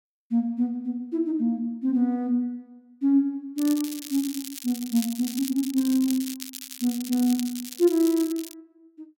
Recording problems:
crackling; from 3.5 to 8.5 s; loose cable, SNR 11 dB

